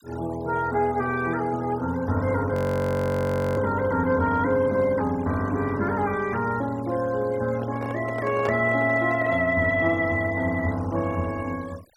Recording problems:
denoising artefacts; signal-to-artefact ratio 21 dB
frozen audio; at 2.5 s for 1 s
handling noise; from 7.5 to 9.5 s; peak -3 dB vs average level

